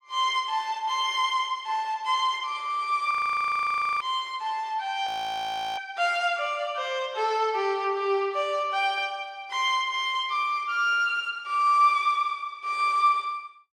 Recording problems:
audio freezing; at 3 s for 1 s and at 5 s for 0.5 s

